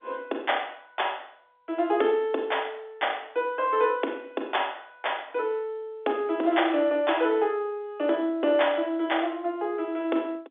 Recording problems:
telephone audio; 240 Hz to 3.6 kHz, G.711

